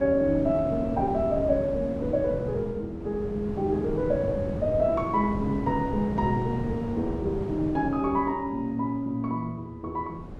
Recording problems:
wind on the microphone; below 350 Hz, SNR 8 dB

